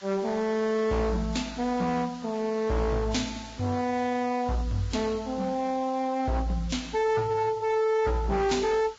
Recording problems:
lossy compression; Vorbis, log-spectral distance 3 dB, nothing above 7.3 kHz
distortion; hard clipping, uneven, signal-to-distortion ratio 10 dB
hiss; SNR 22 dB

